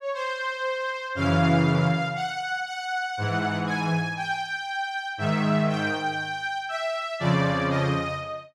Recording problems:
none

